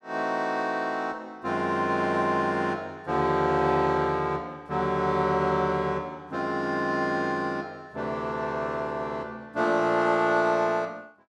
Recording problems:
none

